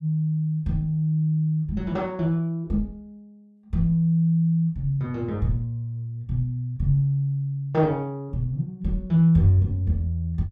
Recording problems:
none

